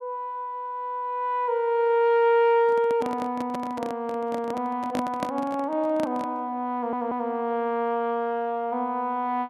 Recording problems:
handling noise; from 2.5 to 6.5 s; peak 0 dB vs average level
stutter; at 7 s

